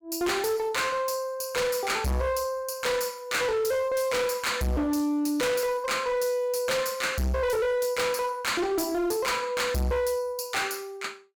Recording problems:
distortion; hard clipping, signal-to-distortion ratio 7 dB

